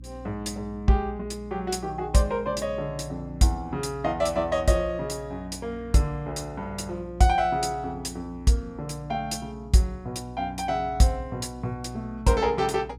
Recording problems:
hum; 60 Hz, harmonics up to 300 Hz, SNR 17 dB

